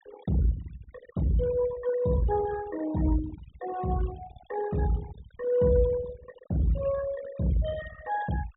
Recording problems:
treble cut off; nothing above 4 kHz
noise reduction artefacts; signal-to-artefact ratio 16 dB

